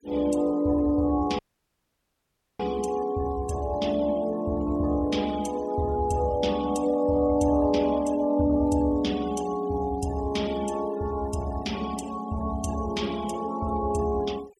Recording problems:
noise reduction artefacts; signal-to-artefact ratio 22 dB
dropout; at 1.5 s for 1 s

